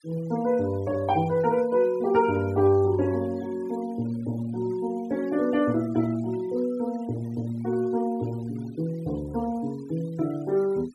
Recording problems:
denoising artefacts; signal-to-artefact ratio 24 dB

